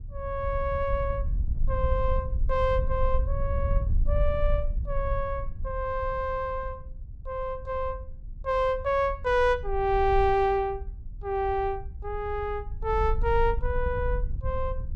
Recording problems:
wind on the microphone; below 64 Hz, SNR 5 dB

